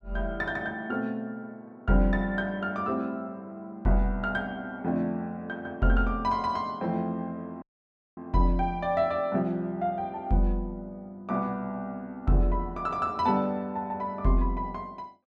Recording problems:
dropout; at 7.5 s for 0.5 s

